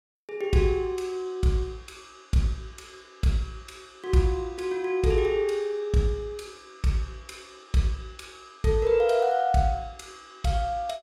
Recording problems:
none

